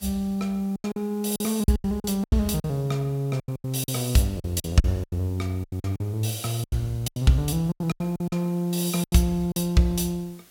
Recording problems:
hiss; slope -2 dB per octave, SNR 26 dB
lost packets; 15% of the sound replaced, filled with silence

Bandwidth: 16.5 kHz